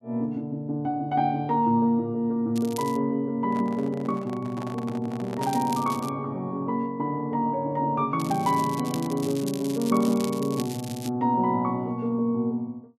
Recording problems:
crackle; at 2.5 s, at 5.5 s and from 8 to 11 s; loose cable, SNR 14 dB
microphone handling noise; from 3.5 to 5.5 s; peak -7 dB vs average level

